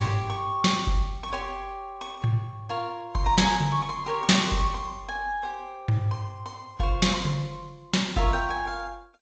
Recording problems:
lossy compression; AAC, then G.722, log-spectral distance 2 dB, nothing above 7.3 kHz

